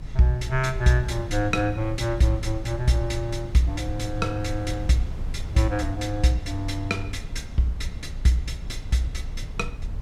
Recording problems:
rumble; below 76 Hz, strongest tone 26 Hz, SNR 12 dB
wind noise; below 140 Hz, SNR 13 dB

